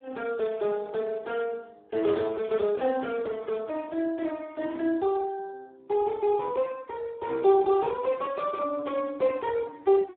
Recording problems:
phone line; 240 Hz to 2.2 kHz, Speex

